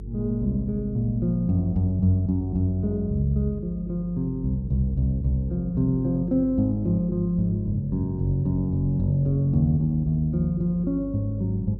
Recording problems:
mains hum; 50 Hz, harmonics up to 450 Hz, SNR 14 dB

